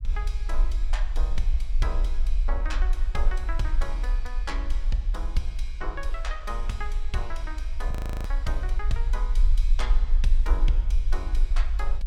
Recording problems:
rumble; below 42 Hz, strongest tone 26 Hz, SNR -8 dB
frozen audio; at 8 s

